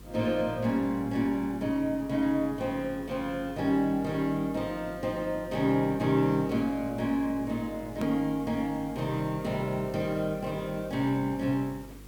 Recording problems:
hum; 50 Hz, harmonics up to 500 Hz, SNR 19 dB
background hiss; SNR 25 dB
edit click; at 8 s

